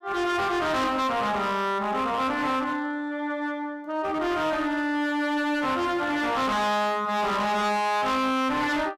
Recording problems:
distorted audio; hard clipping, uneven, signal-to-distortion ratio 7 dB

